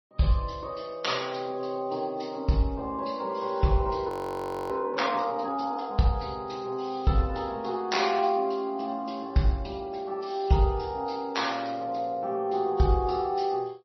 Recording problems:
codec artefacts; MP3, log-spectral distance 4 dB, nothing above 18.3 kHz
audio freezing; at 4 s for 0.5 s

